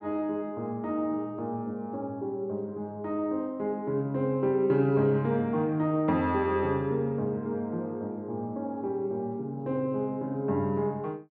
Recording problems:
none

